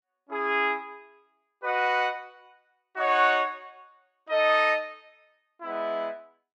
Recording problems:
none

